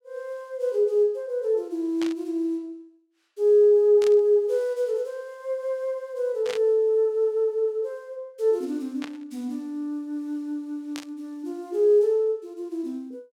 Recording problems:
static burst; 5 times, first at 2 s; peak -7 dB vs average level

